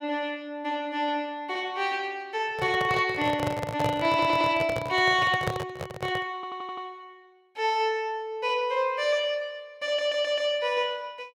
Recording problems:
microphone handling noise; from 2.5 to 6.5 s; peak +2 dB vs average level
audio stuttering; at 4 s, at 6.5 s and at 10 s

